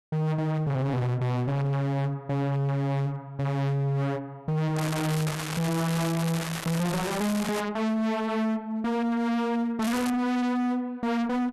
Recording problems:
distortion; hard clipping, uneven, signal-to-distortion ratio 5 dB
crackling; from 5 to 7.5 s and at 10 s; loose cable, SNR 7 dB

